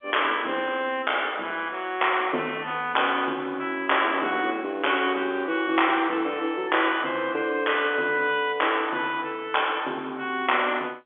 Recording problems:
phone line; 280 Hz to 3.5 kHz, G.711

